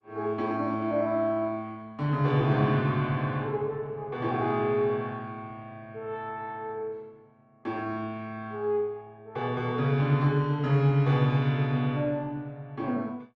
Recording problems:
codec artefacts; Opus, log-spectral distance 2 dB

